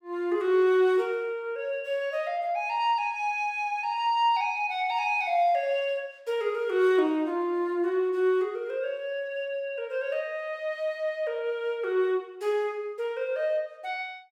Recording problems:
none

